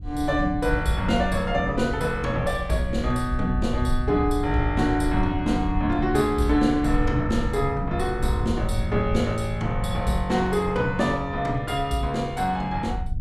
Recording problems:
wind noise; below 82 Hz, SNR 7 dB

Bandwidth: 14.5 kHz